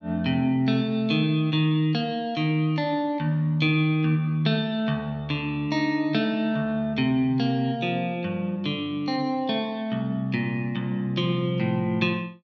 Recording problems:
none

